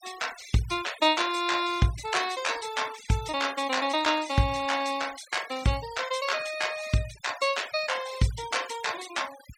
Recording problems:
denoising artefacts; signal-to-artefact ratio 15 dB

